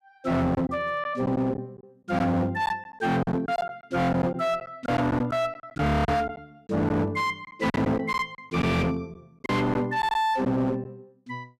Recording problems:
distortion; hard clipping, signal-to-distortion ratio 7 dB
packet loss; 8% of the sound replaced, filled with silence

